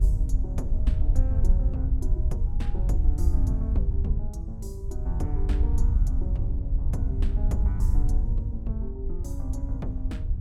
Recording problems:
wind on the microphone; below 70 Hz, SNR -10 dB

